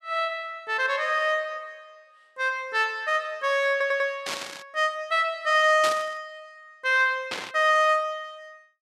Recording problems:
audio stuttering; at 3.5 s
static burst; at 4.5 s, at 6 s and at 7.5 s; peak -2 dB vs average level

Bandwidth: 14 kHz